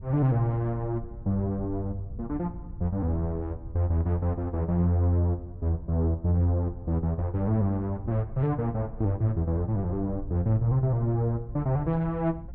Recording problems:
wind on the microphone; below 96 Hz, SNR 15 dB

